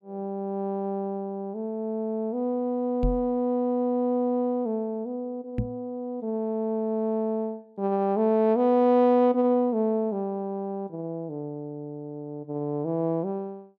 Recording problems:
microphone thump; at 3 s and at 5.5 s; peak +2 dB vs average level

